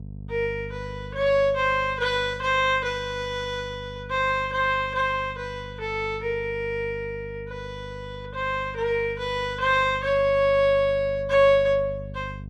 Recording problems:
electrical hum; 50 Hz, harmonics up to 500 Hz, SNR 16 dB

